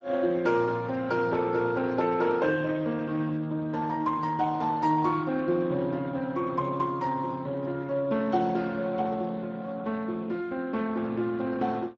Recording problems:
lossy codec; Speex, log-spectral distance 3 dB

